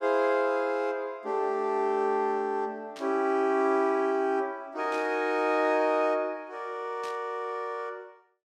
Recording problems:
burst of static; at 3 s, at 5 s and at 7 s; peak -13 dB vs average level

